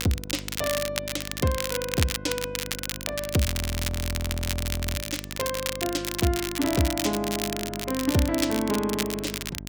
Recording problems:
hum; 50 Hz, harmonics up to 750 Hz, SNR 12 dB
crackling; vinyl, SNR 3 dB
audio freezing; at 3.5 s for 1.5 s

